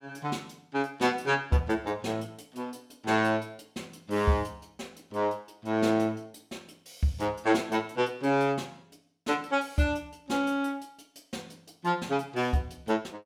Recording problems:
none

